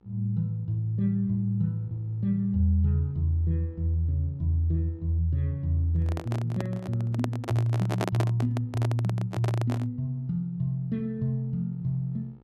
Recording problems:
hum; 60 Hz, harmonics up to 1.4 kHz, SNR 31 dB
handling noise; from 6 to 10 s; peak +2 dB vs average level

